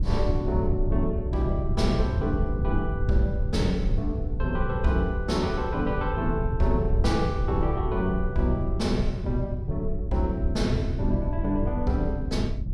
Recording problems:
rumble; below 96 Hz, SNR 1 dB

